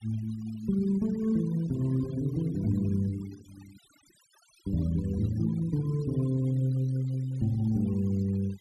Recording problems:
noise reduction artefacts; signal-to-artefact ratio 24 dB

